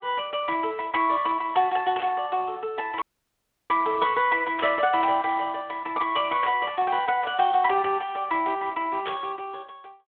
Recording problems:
telephone audio; 280 Hz to 3.4 kHz, Speex
static burst; 4 times, first at 2 s; peak -5 dB vs average level
dropout; at 3 s for 0.5 s

